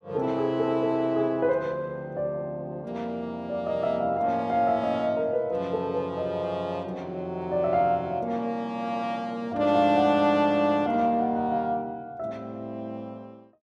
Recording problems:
none

